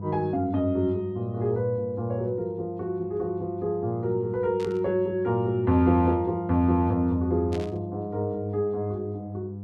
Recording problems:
hum; 50 Hz, harmonics up to 700 Hz, SNR 12 dB
static burst; at 4.5 s and at 7.5 s; peak -11 dB vs average level

